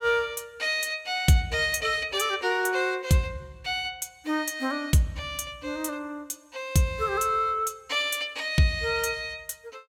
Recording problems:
none

